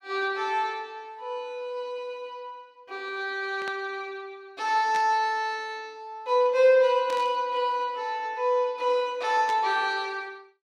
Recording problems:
static burst; 4 times, first at 3.5 s; peak -8 dB vs average level

